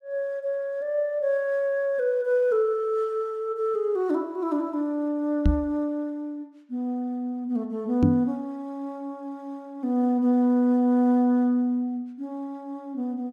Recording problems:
microphone thump; at 5.5 s and at 8 s; peak +7 dB vs average level

